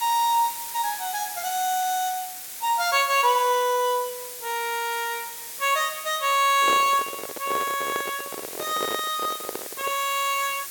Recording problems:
background hiss; slope +1 dB per octave, SNR 9 dB
handling noise; from 6.5 to 10 s; peak -2 dB vs average level

